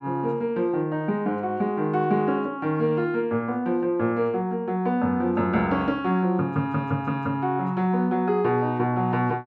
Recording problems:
none

